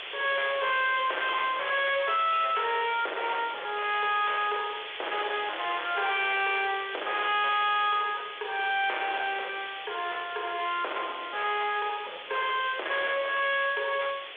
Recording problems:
phone line; 370 Hz to 3.6 kHz, G.726
distorted audio; hard clipping, uneven, signal-to-distortion ratio 5 dB
background hiss; SNR 11 dB

